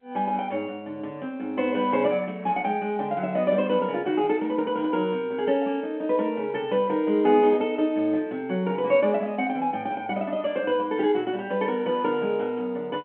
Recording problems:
telephone audio; 220 Hz to 3.5 kHz, G.711

